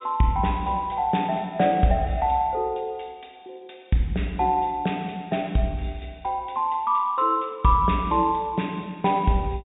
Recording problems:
treble cut off; nothing above 4 kHz

